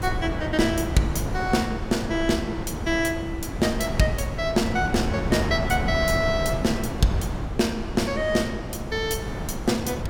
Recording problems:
wind noise; below 400 Hz, SNR 5 dB

